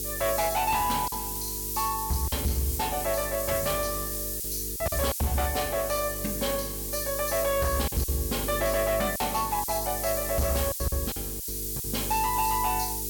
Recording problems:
distortion; hard clipping, uneven, signal-to-distortion ratio 11 dB
hum; 50 Hz, harmonics up to 450 Hz, SNR 10 dB
hiss; slope +8 dB per octave, SNR 2 dB
packet loss; 5% of the sound replaced, filled with silence

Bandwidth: 17.5 kHz